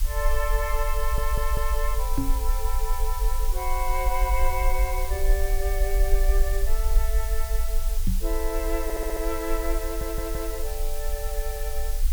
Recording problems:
background hiss; slope +3 dB per octave, SNR 6 dB
rumble; below 44 Hz, strongest tone 20 Hz, SNR -3 dB
audio stuttering; at 1 s, at 9 s and at 10 s
microphone thump; at 2 s and at 8 s; peak +7 dB vs average level
crackle; from 3 to 7.5 s; loose cable, SNR 27 dB

